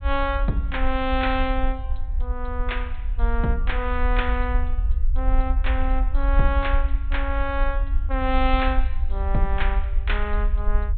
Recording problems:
treble missing; nothing above 4 kHz
rumble; below 54 Hz, SNR -1 dB

